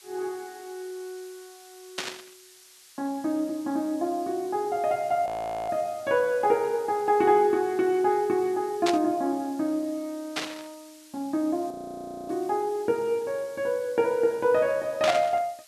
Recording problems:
background hiss; slope +4 dB per octave, SNR 24 dB
burst of static; 4 times, first at 2 s; peak +2 dB vs average level
frozen audio; at 5.5 s and at 12 s for 0.5 s

